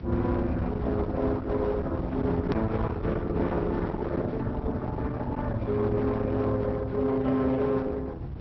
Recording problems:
treble cut off; nothing above 5.7 kHz
lossy compression; Opus, log-spectral distance 2 dB
distorted audio; hard clipping, uneven, signal-to-distortion ratio 11 dB
rumble; below 210 Hz, SNR 6 dB
edit click; at 2.5 s

